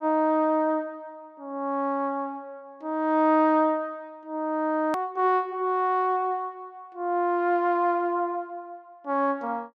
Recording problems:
click at an edit; at 5 s

